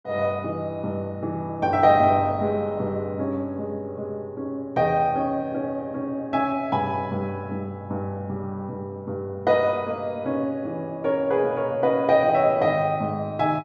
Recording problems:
none

